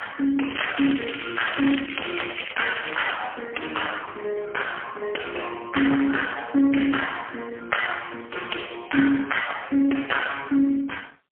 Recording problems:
phone line; 240 Hz to 3.2 kHz, AMR-NB, then MP3
crackle; from 0.5 to 3 s; loose cable, SNR 7 dB

